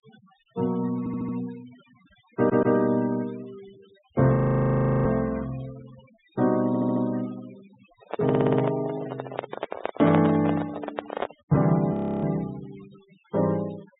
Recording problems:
low-pass filter; nothing above 4 kHz
denoising artefacts; signal-to-artefact ratio 22 dB
stutter; 4 times, first at 1 s
audio freezing; at 4.5 s for 0.5 s and at 12 s
handling noise; from 8 to 11 s; peak +1 dB vs average level

